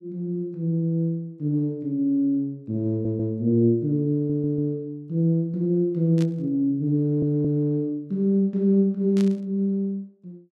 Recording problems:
audio stuttering; at 3 s, at 4 s and at 7 s
static burst; at 6 s and at 9 s; peak -11 dB vs average level

